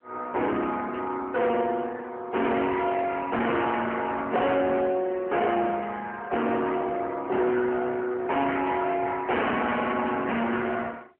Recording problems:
phone line; 260 Hz to 3.3 kHz, AMR-NB
distortion; hard clipping, uneven, signal-to-distortion ratio 6 dB
burst of static; 4 times, first at 1 s; peak -13 dB vs average level

